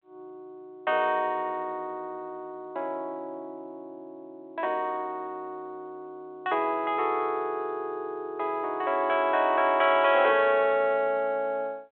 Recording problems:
phone line; 320 Hz to 3.6 kHz, G.726

